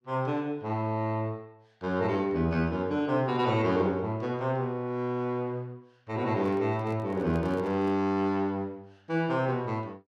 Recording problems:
handling noise; from 6.5 to 8 s; peak -9 dB vs average level

